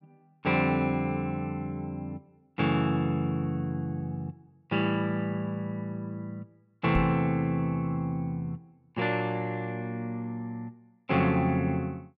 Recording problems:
microphone thump; at 7 s; peak +2 dB vs average level

